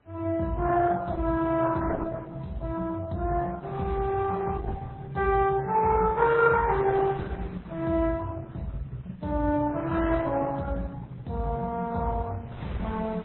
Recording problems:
lossy compression; Opus, then MP3, log-spectral distance 3 dB
wind noise; below 1.3 kHz, SNR 21 dB

